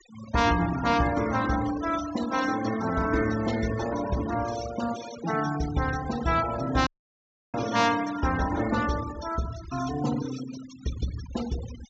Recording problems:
treble missing; nothing above 7.6 kHz
noise reduction artefacts; signal-to-artefact ratio 12 dB
audio cutting out; at 7 s for 0.5 s

